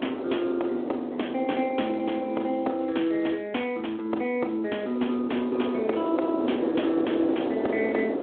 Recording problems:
phone line; 220 Hz to 3.4 kHz, Speex
wind on the microphone; below 550 Hz, SNR 4 dB

